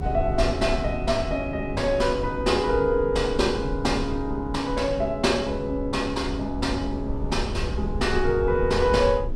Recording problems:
hum; 50 Hz, harmonics up to 300 Hz, SNR 15 dB
low-frequency rumble; below 96 Hz, SNR 9 dB

